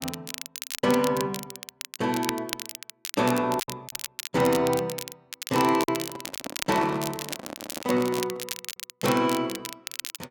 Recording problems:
crackling; vinyl, SNR 9 dB
lost packets; 2% of the sound replaced, filled with silence
microphone handling noise; from 6 to 8.5 s; peak -3 dB vs average level

